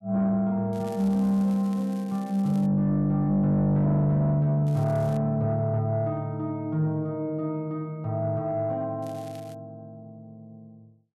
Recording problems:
distorted audio; soft clipping, signal-to-distortion ratio 11 dB
crackling; from 0.5 to 2.5 s, at 4.5 s and at 9 s; loose cable, SNR 27 dB

